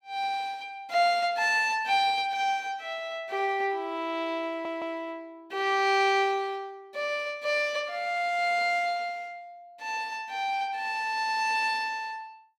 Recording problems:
audio stuttering; at 4.5 s

